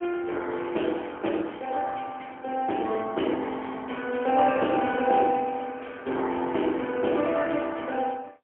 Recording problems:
telephone audio; 220 Hz to 3.2 kHz, AMR-NB, then MP3

